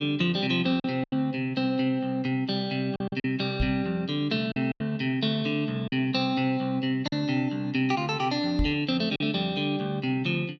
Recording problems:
lost packets; 5% of the sound replaced, filled with silence
microphone thump; at 3.5 s and at 8.5 s; peak +2 dB vs average level

